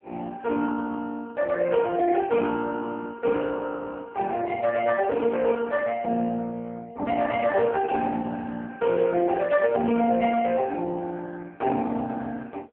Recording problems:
telephone audio; 190 Hz to 2.3 kHz, AMR-NB

